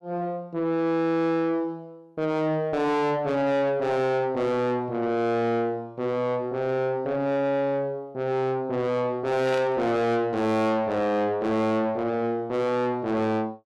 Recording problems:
distortion; soft clipping, signal-to-distortion ratio 7 dB
static burst; at 9.5 s; peak -7 dB vs average level

